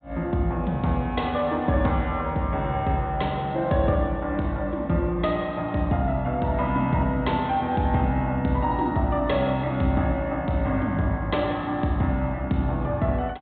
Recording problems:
treble missing; nothing above 4 kHz

